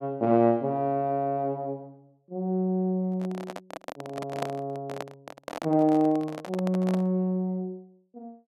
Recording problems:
microphone handling noise; from 3 to 7 s; peak -1 dB vs average level

